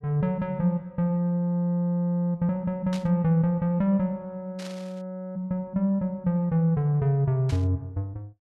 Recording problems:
static burst; at 3 s, at 4.5 s and at 7.5 s; peak -9 dB vs average level

